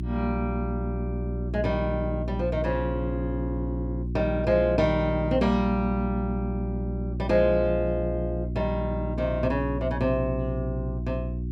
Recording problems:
hum; 60 Hz, harmonics up to 360 Hz, SNR 3 dB

